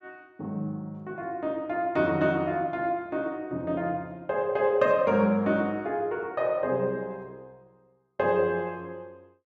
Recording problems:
none

